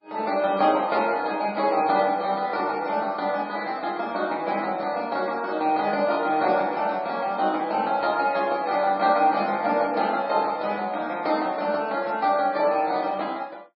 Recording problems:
lossy compression; MP3, log-spectral distance 2 dB, nothing above 4.6 kHz

